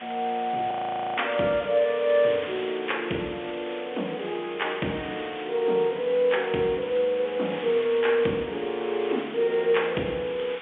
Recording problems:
telephone audio; 190 Hz to 3.5 kHz, G.711
background hiss; SNR 13 dB
frozen audio; at 0.5 s

